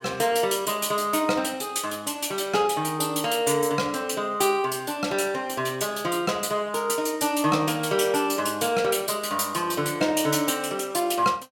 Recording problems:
none

